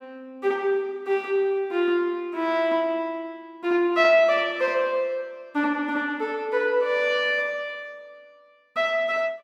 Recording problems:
none

